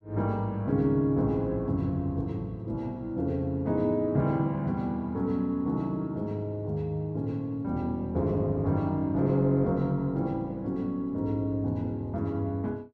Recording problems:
none

